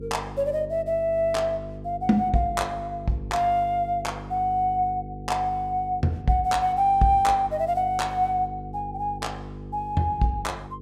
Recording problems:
hum; 50 Hz, harmonics up to 500 Hz, SNR 14 dB

